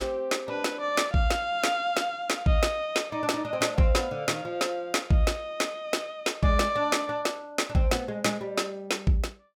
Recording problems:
none

